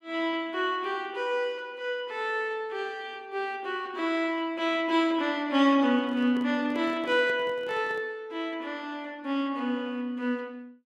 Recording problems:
microphone handling noise; from 6 to 8 s; peak -10 dB vs average level

